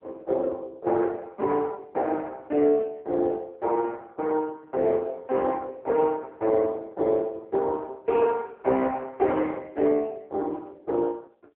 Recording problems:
telephone audio; 280 Hz to 2 kHz, AMR-NB

